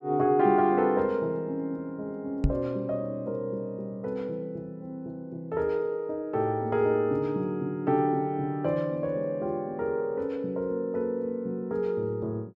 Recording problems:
microphone bump; at 2.5 s; peak +7 dB vs average level

